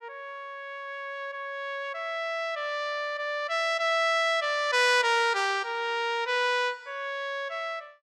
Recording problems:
none

